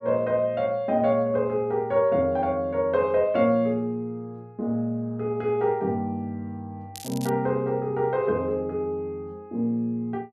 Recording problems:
crackling; at 7 s; loose cable, SNR 16 dB

